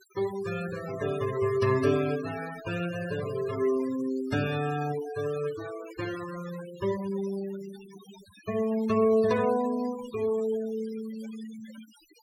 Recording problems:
denoising artefacts; signal-to-artefact ratio 15 dB

